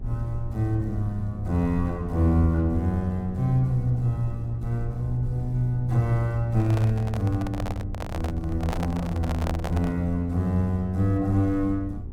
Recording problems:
hum; 60 Hz, harmonics up to 840 Hz, SNR 17 dB
rumble; below 76 Hz, SNR 12 dB
handling noise; from 6.5 to 10 s; peak -2 dB vs average level

